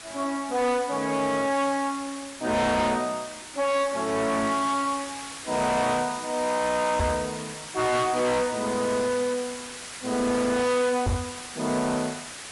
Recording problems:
lossy compression; MP3, log-spectral distance 11 dB, nothing above 11 kHz
distortion; hard clipping, signal-to-distortion ratio 7 dB
hiss; slope 0 dB per octave, SNR 11 dB
microphone bump; at 7 s and at 11 s; peak +2 dB vs average level

